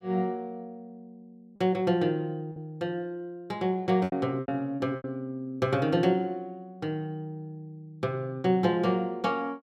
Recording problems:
lost packets; 4% of the sound replaced, filled with repeated pitch periods

